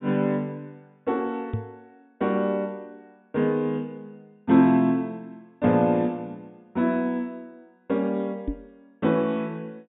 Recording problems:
low-pass filter; nothing above 4 kHz
knock on the microphone; at 1.5 s and at 8.5 s; peak 0 dB vs average level

